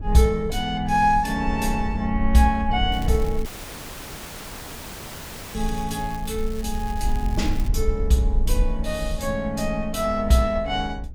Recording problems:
rumble; below 58 Hz, SNR 7 dB
crackling; from 3 to 7.5 s; loose cable, SNR 20 dB
dropout; at 3.5 s for 2 s

